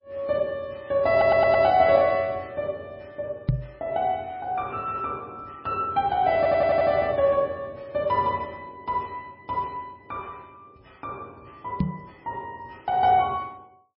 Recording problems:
lossy codec; MP3, log-spectral distance 2 dB, nothing above 4.8 kHz
audio stuttering; at 1 s and at 6.5 s
microphone thump; at 3.5 s and at 12 s; peak +5 dB vs average level

